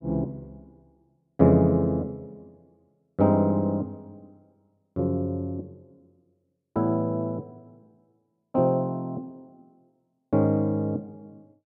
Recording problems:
none

